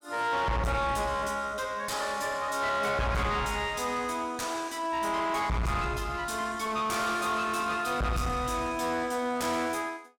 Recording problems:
distorted audio; soft clipping, signal-to-distortion ratio 6 dB

